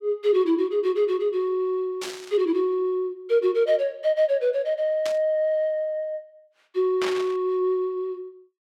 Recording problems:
burst of static; at 2 s, at 5 s and at 7 s; peak -4 dB vs average level

